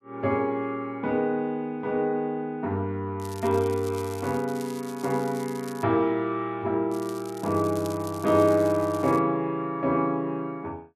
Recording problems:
crackle; from 3 to 6 s and from 7 to 9 s; loose cable, SNR 19 dB

